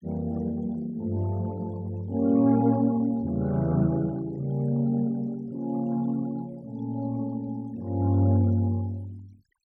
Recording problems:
denoising artefacts; signal-to-artefact ratio 27 dB

